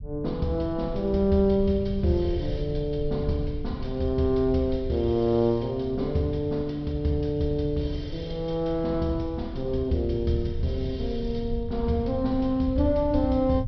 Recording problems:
treble missing; nothing above 5.5 kHz
low-frequency rumble; below 98 Hz, SNR 10 dB

